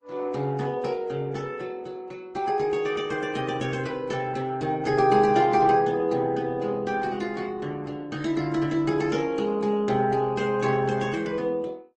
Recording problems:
lossy codec; MP3, then Opus, log-spectral distance 3 dB, nothing above 9.2 kHz

